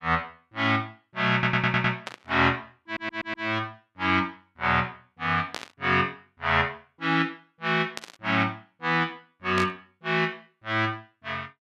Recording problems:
stutter; at 1.5 s and at 3 s
static burst; 4 times, first at 2 s; peak -2 dB vs average level

